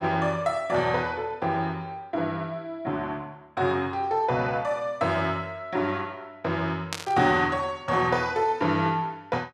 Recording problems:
burst of static; at 7 s; peak +1 dB vs average level

